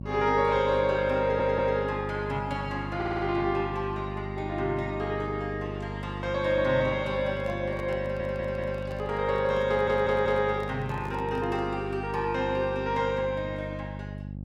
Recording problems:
hum; 50 Hz, harmonics up to 600 Hz, SNR 9 dB
audio stuttering; 4 times, first at 1 s
handling noise; from 7 to 12 s; peak -11 dB vs average level

